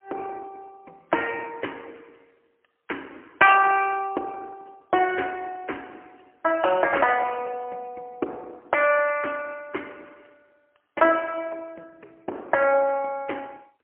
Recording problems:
telephone audio; 280 Hz to 3.1 kHz, AMR-NB, then MP3

